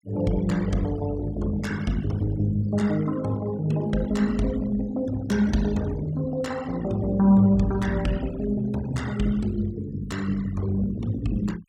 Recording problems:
noise reduction artefacts; signal-to-artefact ratio 20 dB

